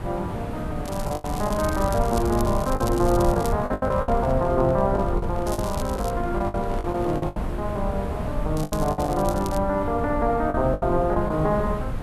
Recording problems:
hiss; SNR 11 dB
low-frequency rumble; below 90 Hz, SNR 7 dB
lost packets; 10% of the sound replaced, filled with the last packet
crackling; from 1 to 3.5 s, at 5.5 s and from 8.5 to 9.5 s; loose cable, SNR 15 dB
microphone handling noise; from 3.5 to 7.5 s; peak -8 dB vs average level

